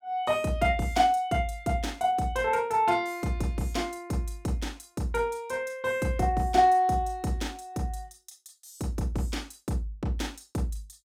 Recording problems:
none

